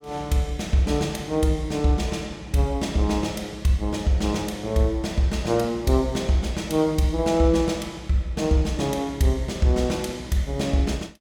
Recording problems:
none

